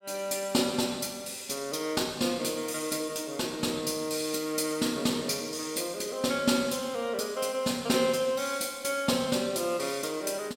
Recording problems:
none

